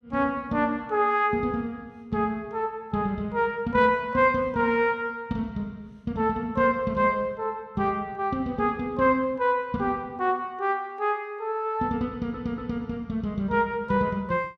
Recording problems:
audio stuttering; at 12 s

